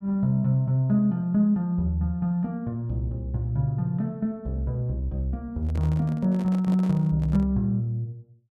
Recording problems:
handling noise; from 5.5 to 7.5 s; peak -8 dB vs average level

